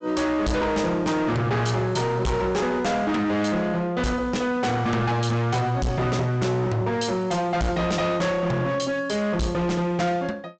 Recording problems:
treble missing; nothing above 8 kHz
distortion; hard clipping, signal-to-distortion ratio 7 dB

